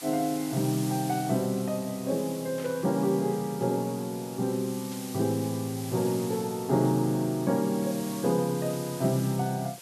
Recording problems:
background hiss; SNR 13 dB
burst of static; at 2.5 s and at 5 s; peak -14 dB vs average level

